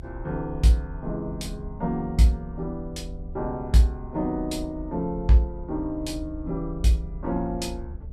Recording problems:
hum; 60 Hz, harmonics up to 720 Hz, SNR 31 dB
low-frequency rumble; below 70 Hz, SNR 13 dB

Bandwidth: 14.5 kHz